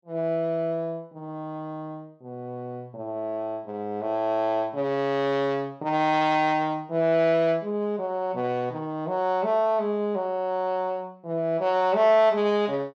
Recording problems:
none

